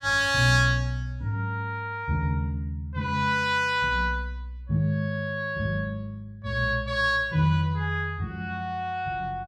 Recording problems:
none

